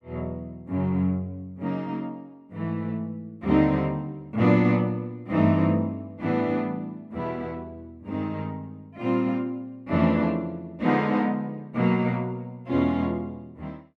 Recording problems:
none

